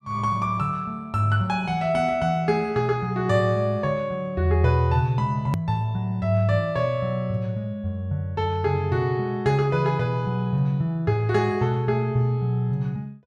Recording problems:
hard cut with a click; at 5.5 s

